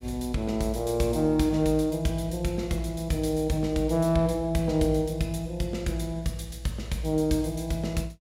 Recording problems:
none

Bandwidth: 16 kHz